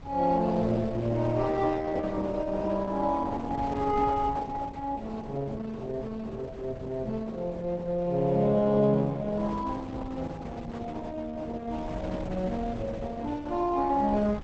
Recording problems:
lossy compression; Opus, log-spectral distance 3 dB, nothing above 7.8 kHz
wind on the microphone; below 320 Hz, SNR 15 dB

